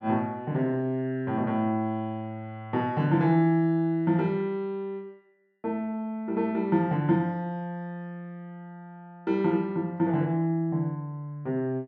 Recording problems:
none

